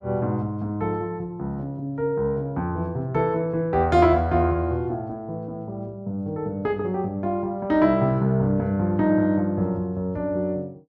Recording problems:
none

